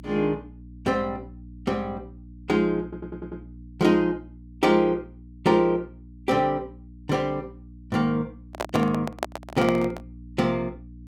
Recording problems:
electrical hum; 60 Hz, harmonics up to 300 Hz, SNR 19 dB
stutter; at 3 s
microphone handling noise; from 8.5 to 10 s; peak +2 dB vs average level

